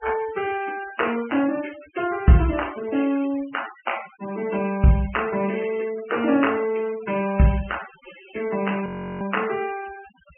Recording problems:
low-pass filter; nothing above 3 kHz
denoising artefacts; signal-to-artefact ratio 16 dB
frozen audio; at 9 s

